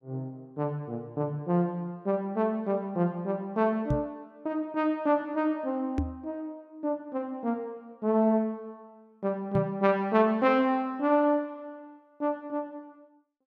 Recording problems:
microphone bump; at 4 s, at 6 s and at 9.5 s; peak +5 dB vs average level

